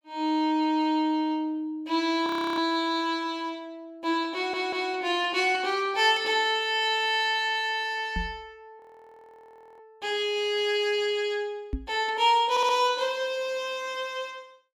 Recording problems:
audio freezing; at 2.5 s and at 9 s for 1 s
stutter; at 4.5 s and at 13 s
microphone thump; at 8 s and at 12 s; peak -2 dB vs average level

